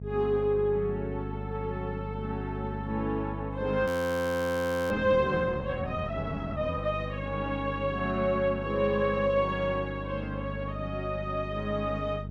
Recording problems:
hum; 50 Hz, harmonics up to 700 Hz, SNR 8 dB
frozen audio; at 4 s for 1 s

